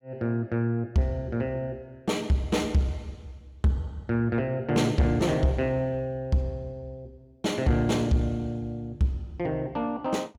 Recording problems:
distorted audio; soft clipping, signal-to-distortion ratio 10 dB

